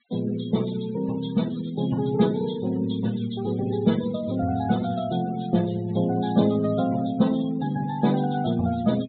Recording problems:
treble missing; nothing above 4 kHz
denoising artefacts; signal-to-artefact ratio 18 dB

